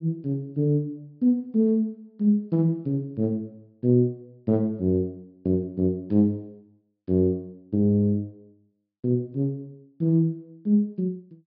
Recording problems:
treble cut off; nothing above 5.5 kHz

